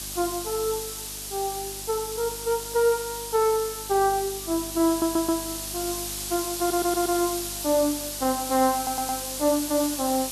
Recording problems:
hum; 50 Hz, harmonics up to 400 Hz, SNR 20 dB
background hiss; SNR 5 dB
audio stuttering; at 5 s, at 6.5 s and at 9 s

